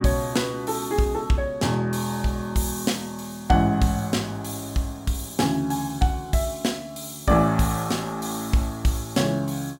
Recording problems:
none

